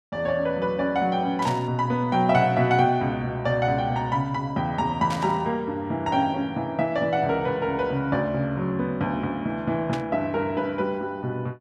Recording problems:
burst of static; at 1.5 s, at 5 s and at 10 s; peak -6 dB vs average level

